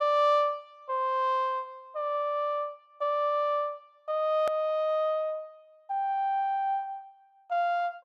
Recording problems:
click at an edit; at 4.5 s

